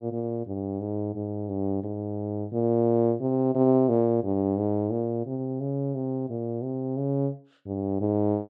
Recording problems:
none

